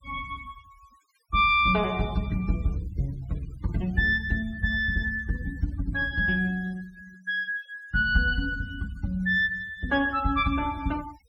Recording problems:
denoising artefacts; signal-to-artefact ratio 25 dB

